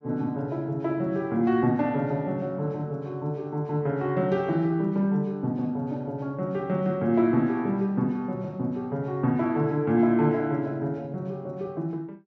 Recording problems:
none

